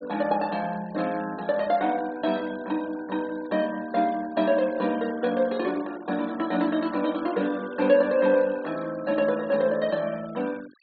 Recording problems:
treble missing; nothing above 4.6 kHz
denoising artefacts; signal-to-artefact ratio 21 dB

